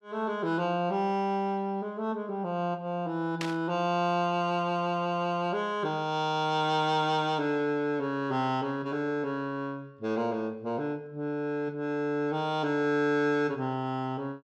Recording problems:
static burst; at 3.5 s; peak -1 dB vs average level

